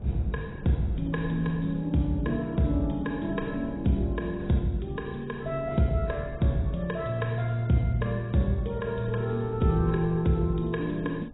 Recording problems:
lossy codec; AAC, log-spectral distance 4 dB, nothing above 3.8 kHz
low-frequency rumble; below 210 Hz, SNR 16 dB

